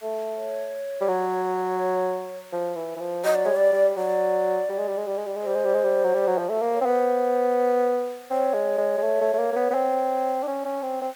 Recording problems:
hiss; SNR 24 dB

